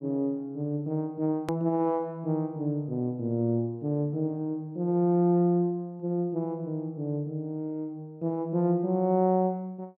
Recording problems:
hard cut with a click; at 1.5 s

